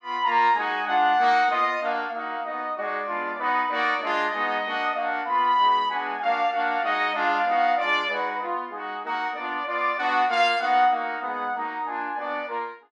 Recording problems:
none

